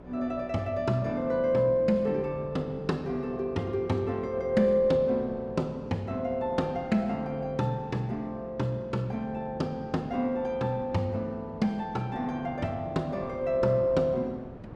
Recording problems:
hum; 60 Hz, harmonics up to 600 Hz, SNR 21 dB
wind on the microphone; below 520 Hz, SNR 20 dB

